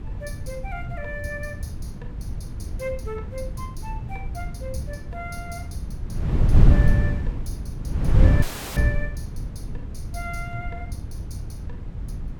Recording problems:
wind noise; below 110 Hz, SNR -9 dB
dropout; at 8.5 s

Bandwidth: 17.5 kHz